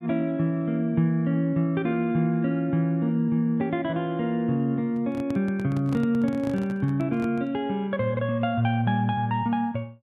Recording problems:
microphone handling noise; from 5 to 7.5 s; peak -6 dB vs average level

